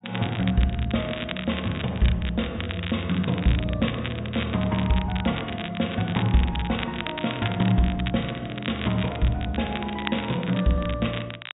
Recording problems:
low-pass filter; nothing above 4 kHz
crackle; vinyl, SNR 10 dB

